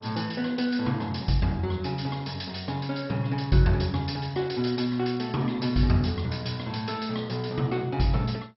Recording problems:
codec artefacts; MP2, log-spectral distance 7 dB, nothing above 5.5 kHz

